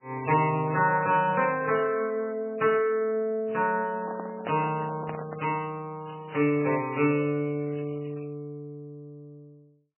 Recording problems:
codec artefacts; MP3, then MP3, log-spectral distance 4 dB, nothing above 2.7 kHz
crackle; from 4 to 5 s and from 6 to 8.5 s; loose cable, SNR 29 dB
microphone handling noise; from 4 to 5.5 s; peak -5 dB vs average level

